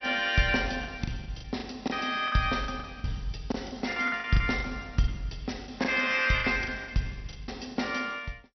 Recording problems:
lossy codec; MP2, log-spectral distance 6 dB, nothing above 5.8 kHz
packet loss; 13% of the sound replaced, filled with the last packet

